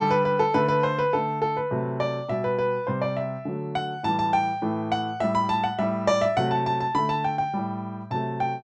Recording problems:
none

